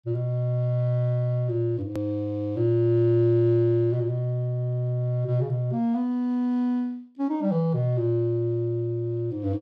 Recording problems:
hard cut with a click; at 2 s

